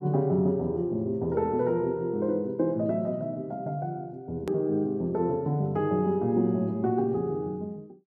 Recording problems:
click at an edit; at 4.5 s

